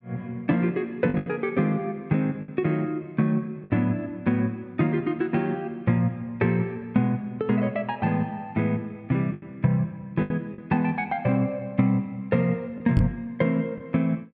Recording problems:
packet loss; 4% of the sound replaced, filled with the last packet
knock on the microphone; at 13 s; peak +4 dB vs average level

